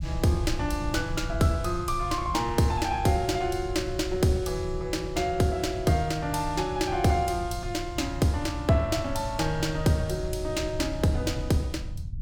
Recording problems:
rumble; below 100 Hz, SNR 9 dB

